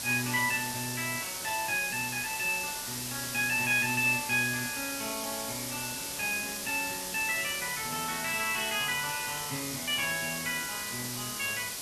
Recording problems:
background hiss; SNR 3 dB

